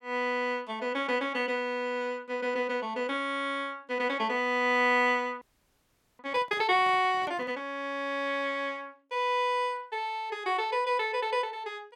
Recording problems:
frozen audio; at 5.5 s for 1 s
handling noise; from 6.5 to 7.5 s; peak -14 dB vs average level

